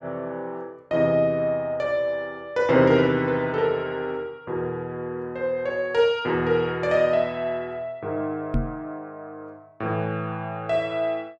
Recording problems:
microphone thump; at 8.5 s; peak +2 dB vs average level

